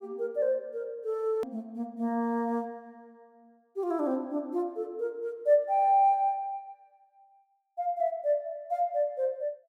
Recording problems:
click at an edit; at 1.5 s

